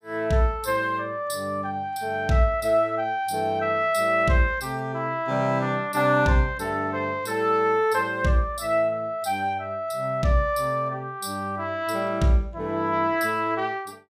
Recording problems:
none

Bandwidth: 15.5 kHz